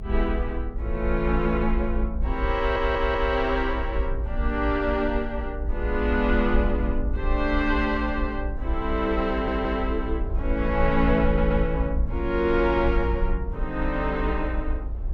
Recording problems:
rumble; below 56 Hz, strongest tone 26 Hz, SNR 4 dB
wind noise; below 520 Hz, SNR 20 dB
stutter; at 2.5 s, at 9.5 s and at 11 s

